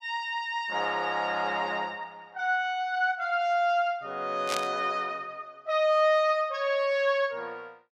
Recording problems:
burst of static; at 4.5 s; peak 0 dB vs average level

